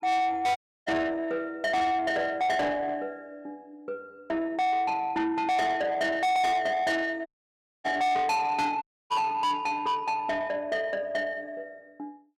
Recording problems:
distortion; soft clipping, signal-to-distortion ratio 6 dB
audio cutting out; at 0.5 s, at 7.5 s for 0.5 s and at 9 s

